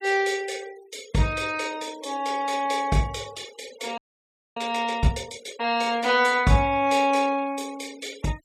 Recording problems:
noise reduction artefacts; signal-to-artefact ratio 20 dB
audio freezing; at 4 s for 0.5 s

